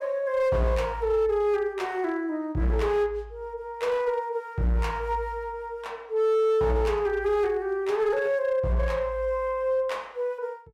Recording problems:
distortion; hard clipping, signal-to-distortion ratio 12 dB

